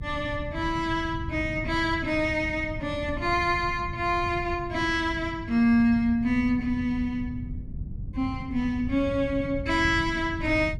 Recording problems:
rumble; below 140 Hz, SNR 11 dB

